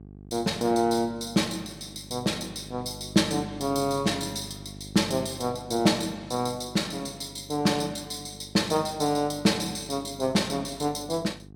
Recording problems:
hum; 50 Hz, harmonics up to 800 Hz, SNR 18 dB

